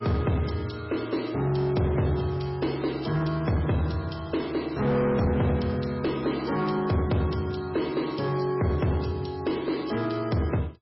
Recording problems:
lossy compression; MP3, log-spectral distance 5 dB, nothing above 5.5 kHz
distorted audio; soft clipping, signal-to-distortion ratio 10 dB

